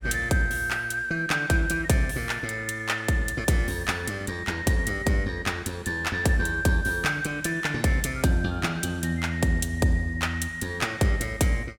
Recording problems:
none

